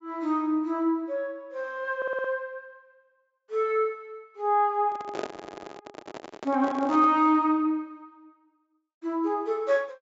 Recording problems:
low-pass filter; nothing above 8 kHz
stutter; at 2 s and at 5.5 s
microphone handling noise; from 5 to 7 s; peak -2 dB vs average level

